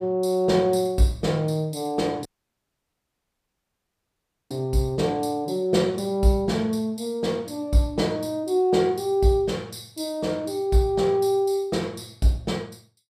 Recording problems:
audio cutting out; at 2.5 s for 2.5 s

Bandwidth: 15 kHz